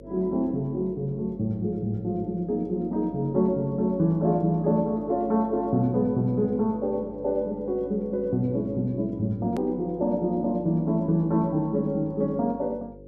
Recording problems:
mains hum; 50 Hz, harmonics up to 550 Hz, SNR 19 dB
hard cut with a click; at 9.5 s

